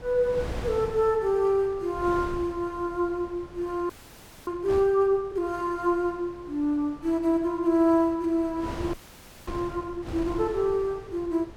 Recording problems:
wind on the microphone; below 550 Hz, SNR 15 dB
frozen audio; at 4 s for 0.5 s and at 9 s for 0.5 s

